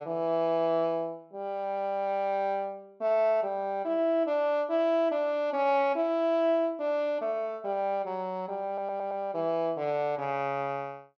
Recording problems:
audio stuttering; at 8.5 s

